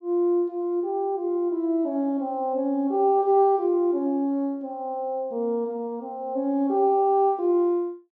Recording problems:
none

